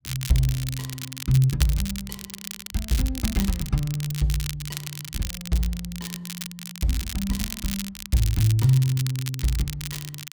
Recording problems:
crackling; vinyl, SNR 9 dB

